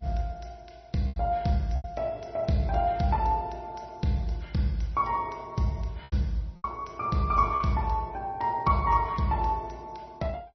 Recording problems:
codec artefacts; MP3, then Vorbis, log-spectral distance 5 dB, nothing above 5.8 kHz
packet loss; 3% of the sound replaced, filled with repeated pitch periods

